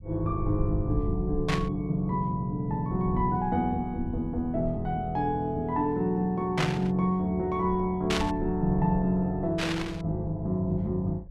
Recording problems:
rumble; below 110 Hz, SNR 11 dB
burst of static; 4 times, first at 1.5 s; peak +2 dB vs average level

